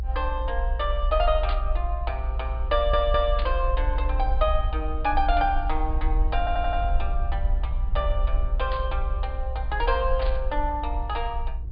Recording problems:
low-pass filter; nothing above 4.7 kHz
rumble; below 58 Hz, SNR 1 dB
static burst; 4 times, first at 1.5 s; peak -3 dB vs average level
audio stuttering; at 2.5 s and at 6.5 s

